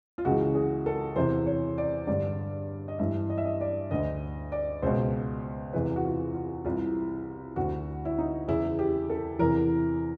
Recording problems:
none

